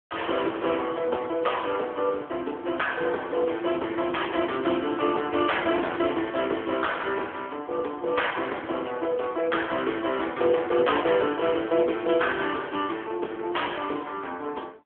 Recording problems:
telephone audio; 260 Hz to 3.4 kHz, AMR-NB

